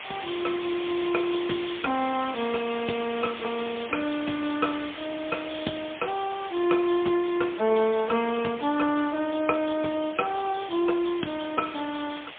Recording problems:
phone line; 190 Hz to 3.5 kHz, AMR-NB, then MP3
background hiss; SNR 11 dB

